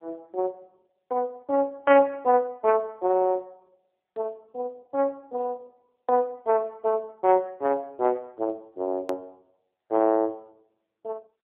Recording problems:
telephone audio; 300 Hz to 3.3 kHz, AMR-NB
click at an edit; at 9 s

